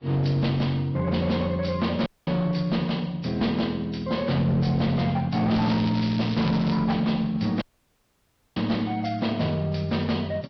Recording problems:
lossy codec; Vorbis, log-spectral distance 4 dB, nothing above 5.2 kHz
distortion; hard clipping, uneven, signal-to-distortion ratio 11 dB
dropout; at 2 s and at 7.5 s for 1 s
crackle; from 5.5 to 6.5 s; loose cable, SNR 14 dB

